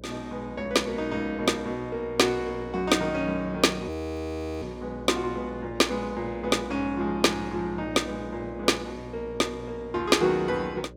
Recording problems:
hum; 60 Hz, harmonics up to 600 Hz, SNR 16 dB
audio freezing; at 4 s for 0.5 s

